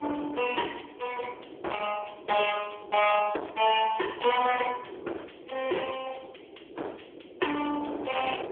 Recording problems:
phone line; 300 Hz to 3.4 kHz, AMR-NB
distorted audio; hard clipping, uneven, signal-to-distortion ratio 6 dB
wind noise; below 900 Hz, SNR 15 dB

